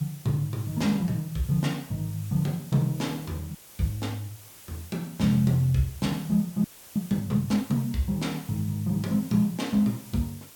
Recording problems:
hiss; slope -1 dB per octave, SNR 19 dB
audio freezing; at 3.5 s and at 6.5 s

